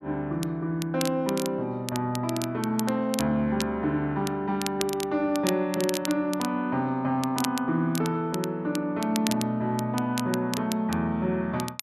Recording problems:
crackling; vinyl, SNR 10 dB

